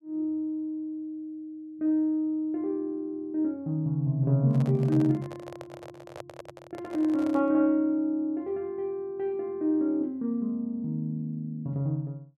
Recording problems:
microphone handling noise; from 4.5 to 7.5 s; peak -9 dB vs average level

